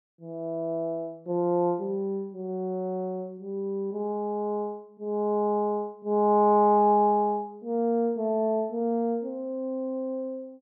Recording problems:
none

